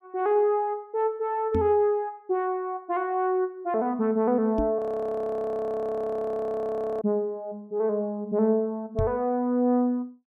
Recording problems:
microphone thump; at 1.5 s, at 4.5 s and at 9 s; peak +1 dB vs average level
audio freezing; at 5 s for 2 s

